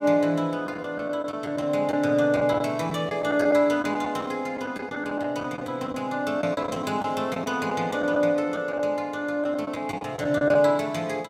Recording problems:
lost packets; 9% of the sound replaced, filled with the last packet

